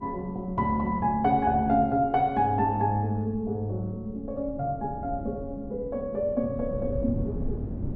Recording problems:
wind noise; below 190 Hz, SNR 12 dB

